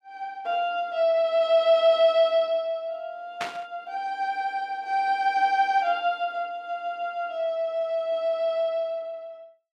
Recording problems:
burst of static; at 3.5 s; peak -2 dB vs average level

